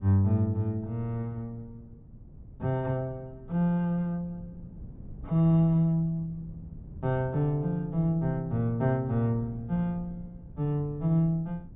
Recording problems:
treble missing; nothing above 4 kHz
wind noise; below 150 Hz, SNR 19 dB

